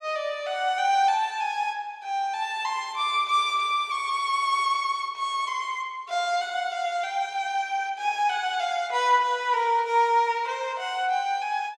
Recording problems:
none

